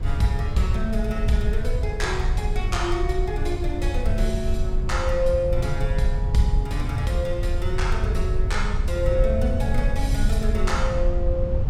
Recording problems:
low-frequency rumble; below 72 Hz, SNR -1 dB

